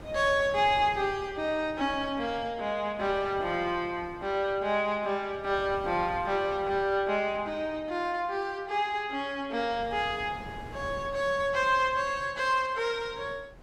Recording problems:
wind noise; below 560 Hz, SNR 19 dB

